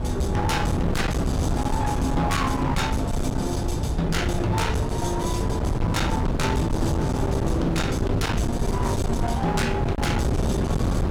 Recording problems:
distortion; hard clipping, signal-to-distortion ratio 8 dB
wind on the microphone; below 310 Hz, SNR 0 dB

